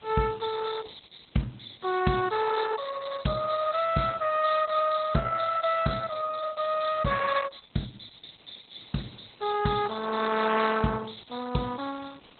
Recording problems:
codec artefacts; Opus, log-spectral distance 12 dB, nothing above 4 kHz
hiss; SNR 29 dB

